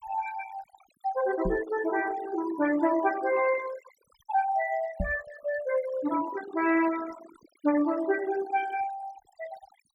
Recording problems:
denoising artefacts; signal-to-artefact ratio 15 dB
knock on the microphone; at 1.5 s and at 5 s; peak +1 dB vs average level

